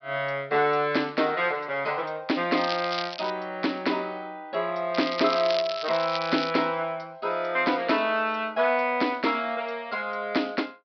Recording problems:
treble missing; nothing above 5.5 kHz
crackling; at 2.5 s and from 5 to 6.5 s; loose cable, SNR 8 dB

